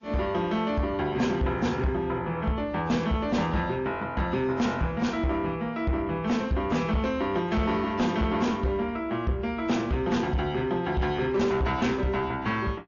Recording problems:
treble missing; nothing above 6.9 kHz
codec artefacts; AAC, log-spectral distance 2 dB
distorted audio; soft clipping, signal-to-distortion ratio 10 dB

